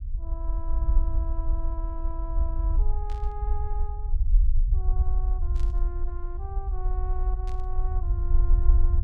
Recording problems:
rumble; below 54 Hz, SNR -14 dB
burst of static; at 3 s, at 5.5 s and at 7.5 s; peak -4 dB vs average level

